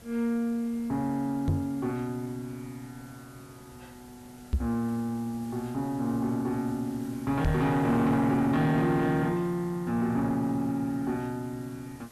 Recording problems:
distorted audio; soft clipping, signal-to-distortion ratio 11 dB
hiss; slope -4 dB per octave, SNR 22 dB
knock on the microphone; at 1.5 s, at 4.5 s and at 7.5 s; peak +5 dB vs average level

